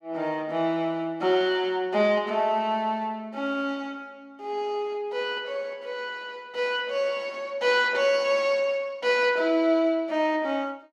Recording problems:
none

